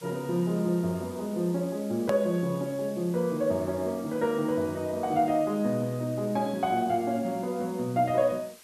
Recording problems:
background hiss; slope 0 dB per octave, SNR 22 dB
hard cut with a click; at 2 s

